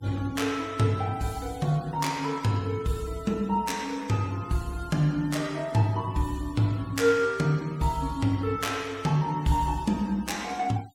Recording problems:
noise reduction artefacts; signal-to-artefact ratio 22 dB

